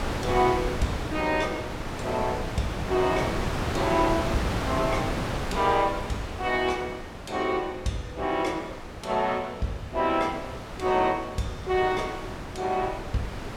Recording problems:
wind noise; below 1.2 kHz, SNR 5 dB

